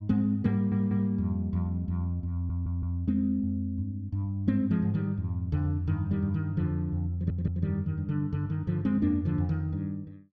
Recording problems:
stutter; at 0.5 s, at 2.5 s and at 7 s

